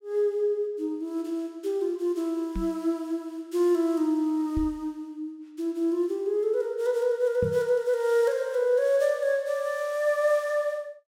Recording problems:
knock on the microphone; at 2.5 s, at 4.5 s and at 7.5 s; peak -2 dB vs average level

